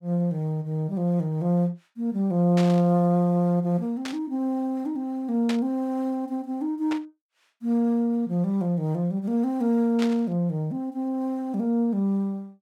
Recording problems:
burst of static; 5 times, first at 2.5 s; peak -3 dB vs average level

